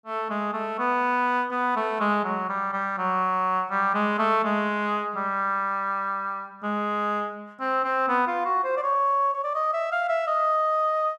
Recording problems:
none

